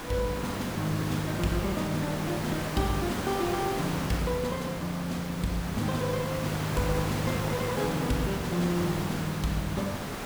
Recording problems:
hiss; slope -5 dB per octave, SNR 4 dB

